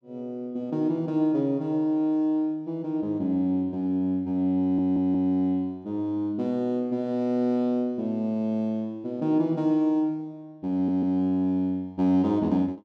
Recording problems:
stutter; at 4.5 s and at 11 s

